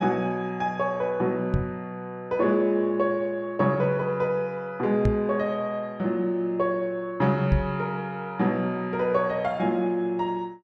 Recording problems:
knock on the microphone; at 1.5 s, at 5 s and at 7.5 s; peak +6 dB vs average level

